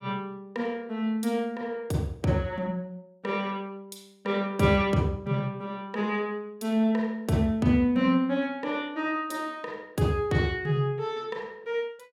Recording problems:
none

